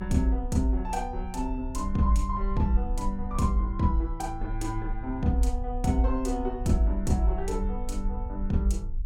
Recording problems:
rumble; below 52 Hz, strongest tone 34 Hz, SNR 6 dB

